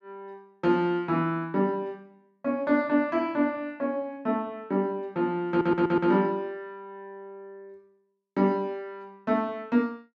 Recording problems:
stutter; at 5.5 s

